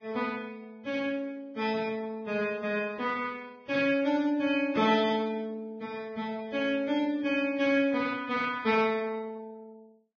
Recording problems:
lossy codec; Vorbis, log-spectral distance 2 dB

